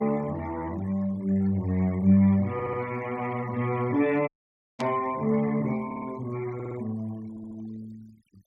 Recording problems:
noise reduction artefacts; signal-to-artefact ratio 23 dB
audio stuttering; 4 times, first at 2.5 s
audio cutting out; at 4.5 s for 0.5 s
burst of static; at 5 s; peak -8 dB vs average level

